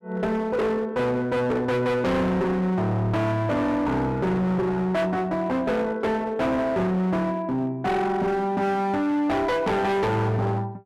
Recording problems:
distortion; hard clipping, signal-to-distortion ratio 7 dB

